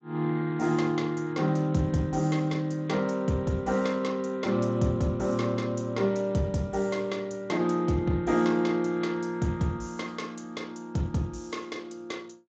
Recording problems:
lossy codec; Speex, log-spectral distance 3 dB, nothing above 7.3 kHz

